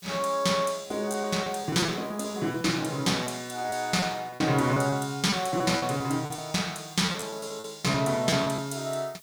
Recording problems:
background hiss; slope +2 dB per octave, SNR 25 dB
packet loss; 10% of the sound replaced, filled with repeated pitch periods

